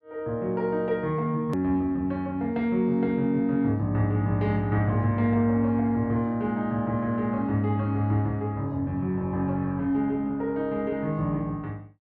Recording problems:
edit click; at 1.5 s

